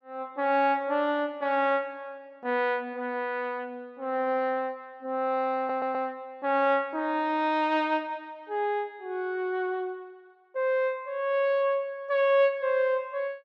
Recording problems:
stutter; at 5.5 s

